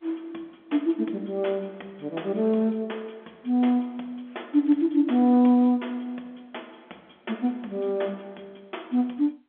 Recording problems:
phone line; 220 Hz to 3.9 kHz, G.711

